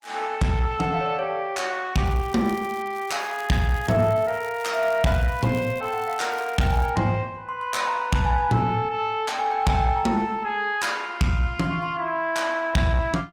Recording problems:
lossy compression; Opus, log-spectral distance 2 dB, nothing above 19 kHz
distorted audio; soft clipping, signal-to-distortion ratio 10 dB
crackling; from 2 to 7 s; loose cable, SNR 24 dB

